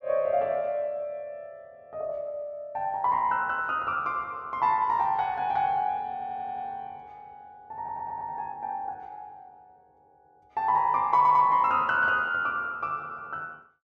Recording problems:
audio stuttering; at 6 s, at 8 s and at 11 s

